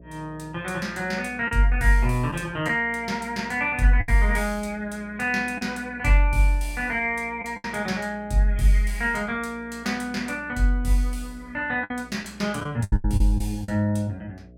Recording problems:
electrical hum; 60 Hz, harmonics up to 660 Hz, SNR 23 dB
packet loss; 4% of the sound replaced, filled with the last packet

